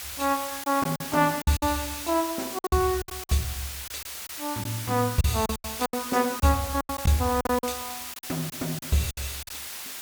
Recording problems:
background hiss; slope +2 dB per octave, SNR 7 dB
lost packets; 11% of the sound replaced, filled with silence

